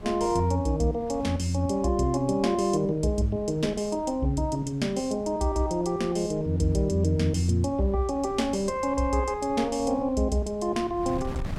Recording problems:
wind noise; below 170 Hz, SNR 19 dB

